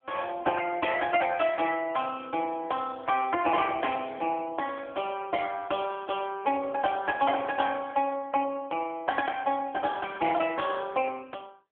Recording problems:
phone line; 260 Hz to 3.3 kHz, AMR-NB

